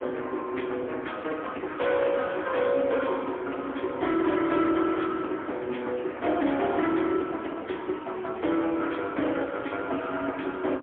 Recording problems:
telephone audio; 240 Hz to 3.4 kHz, AMR-NB, then MP3
distortion; hard clipping, uneven, signal-to-distortion ratio 12 dB

